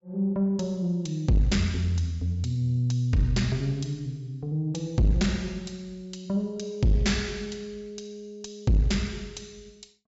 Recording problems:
treble cut off; nothing above 8 kHz
distortion; soft clipping, signal-to-distortion ratio 10 dB

